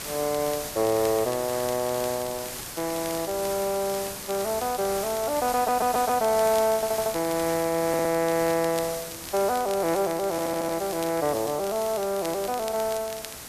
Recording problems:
background hiss; slope -2 dB per octave, SNR 9 dB
crackling; vinyl, SNR 18 dB
audio stuttering; 4 times, first at 5.5 s

